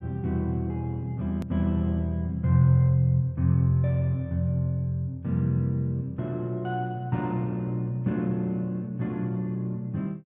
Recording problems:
edit click; at 1.5 s

